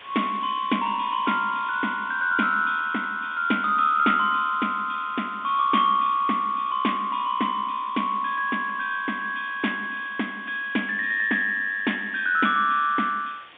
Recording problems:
telephone audio; 110 Hz to 3.6 kHz, G.711
hiss; SNR 22 dB

